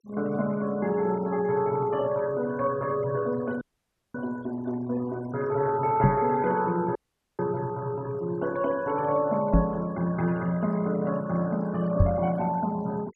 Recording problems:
denoising artefacts; signal-to-artefact ratio 21 dB
audio cutting out; at 3.5 s for 0.5 s and at 7 s
knock on the microphone; at 6 s, at 9.5 s and at 12 s; peak +10 dB vs average level

